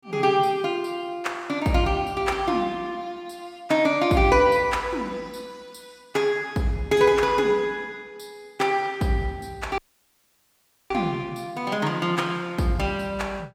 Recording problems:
audio cutting out; at 10 s for 1 s

